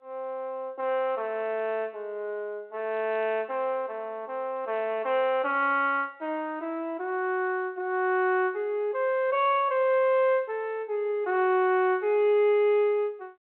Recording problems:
phone line; 280 Hz to 3.3 kHz, G.726

